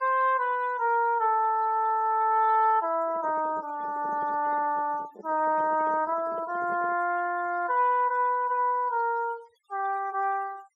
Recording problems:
denoising artefacts; signal-to-artefact ratio 26 dB
handling noise; from 3 to 7 s; peak -12 dB vs average level

